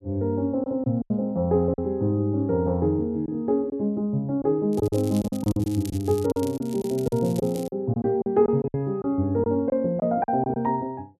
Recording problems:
packet loss; 9% of the sound replaced, filled with silence
crackle; from 4.5 to 7.5 s; loose cable, SNR 19 dB

